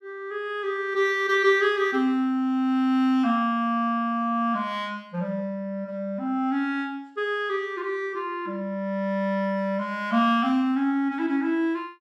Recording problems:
none

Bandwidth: 14 kHz